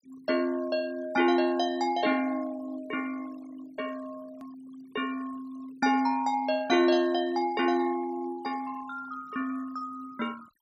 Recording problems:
denoising artefacts; signal-to-artefact ratio 24 dB
hard cut with a click; at 4.5 s

